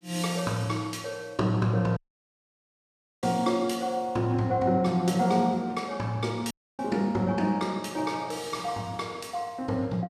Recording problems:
audio cutting out; at 2 s for 1.5 s and at 6.5 s

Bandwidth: 14.5 kHz